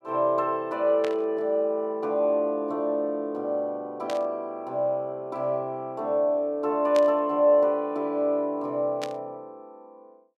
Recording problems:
burst of static; 4 times, first at 1 s; peak -6 dB vs average level

